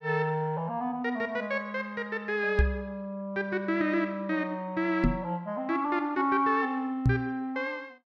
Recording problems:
microphone thump; at 2.5 s, at 5 s and at 7 s; peak +9 dB vs average level

